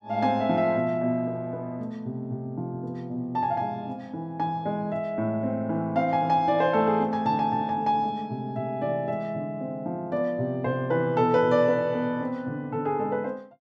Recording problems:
none

